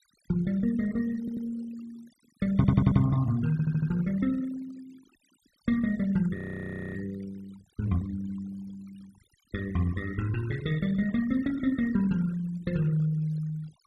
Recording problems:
noise reduction artefacts; signal-to-artefact ratio 20 dB
audio stuttering; at 1 s, at 2.5 s and at 3.5 s
audio freezing; at 6.5 s for 0.5 s

